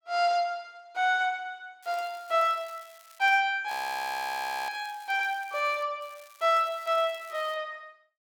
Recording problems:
crackle; from 2 to 3.5 s, from 3.5 to 6 s and from 6 to 7.5 s; loose cable, SNR 24 dB
frozen audio; at 3.5 s for 1 s

